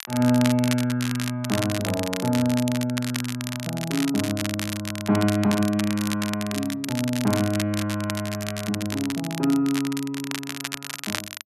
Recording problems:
crackle; vinyl, SNR 7 dB

